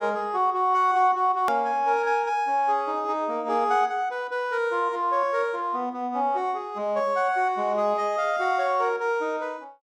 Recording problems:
click at an edit; at 1.5 s

